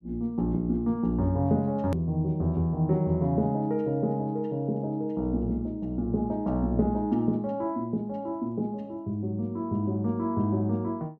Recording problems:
click at an edit; at 2 s

